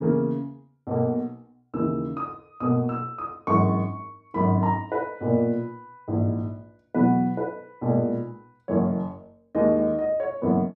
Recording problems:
none

